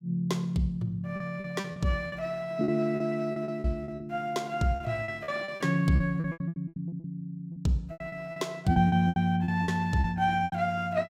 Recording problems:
packet loss; 15% of the sound replaced, filled with repeated pitch periods

